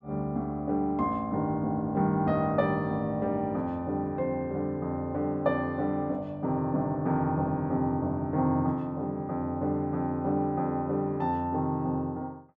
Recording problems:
none

